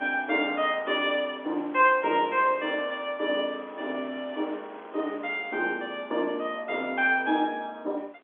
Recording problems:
telephone audio; 240 Hz to 3.4 kHz, G.711
wind noise; below 1.7 kHz, SNR 23 dB

